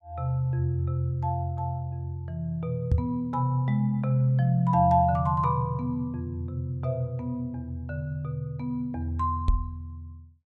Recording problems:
knock on the microphone; at 3 s and at 9.5 s; peak +7 dB vs average level

